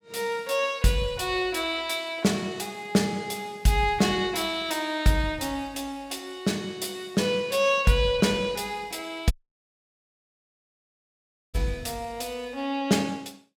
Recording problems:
audio cutting out; at 9.5 s for 2 s

